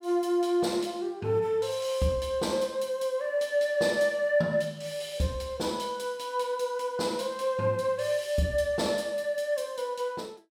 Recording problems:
none

